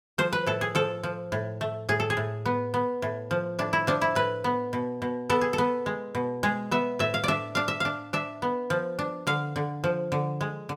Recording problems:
none

